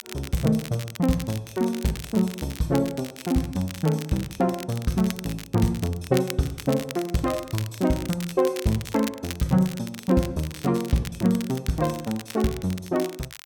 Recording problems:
crackle; vinyl, SNR 14 dB

